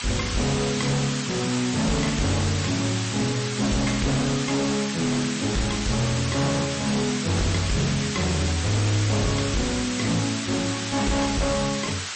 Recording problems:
lossy compression; MP3, log-spectral distance 16 dB, nothing above 8 kHz
distortion; hard clipping, uneven, signal-to-distortion ratio 8 dB
background hiss; SNR 4 dB

